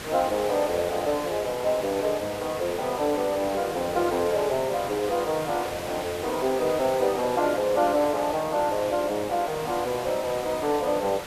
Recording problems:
hiss; slope -3 dB per octave, SNR 10 dB

